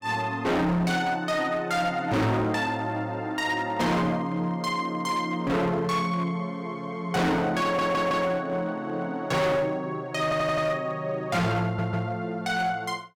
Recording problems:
distortion; hard clipping, signal-to-distortion ratio 6 dB
stutter; at 7.5 s, at 10 s and at 12 s

